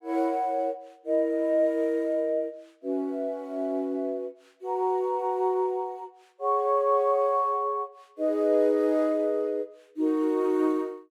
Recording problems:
none

